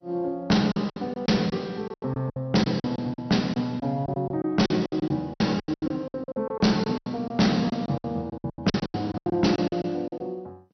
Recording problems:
lossy compression; MP2, log-spectral distance 2 dB, nothing above 5.8 kHz
distorted audio; hard clipping, signal-to-distortion ratio 7 dB
lost packets; 18% of the sound replaced, filled with silence

